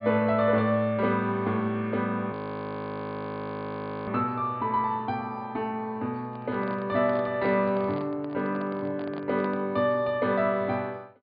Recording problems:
low-pass filter; nothing above 4.9 kHz
audio freezing; at 2.5 s for 2 s
handling noise; from 6 to 9.5 s; peak -9 dB vs average level

